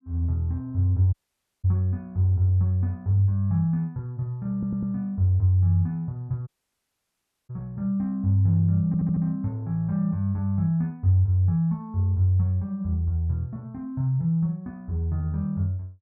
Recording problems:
audio cutting out; at 1 s for 0.5 s and at 6.5 s for 1 s
stutter; at 4.5 s and at 9 s

